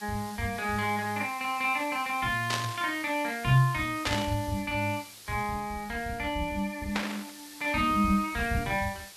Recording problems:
hiss; slope +1 dB per octave, SNR 16 dB
static burst; at 2.5 s, at 4 s and at 7 s; peak +3 dB vs average level

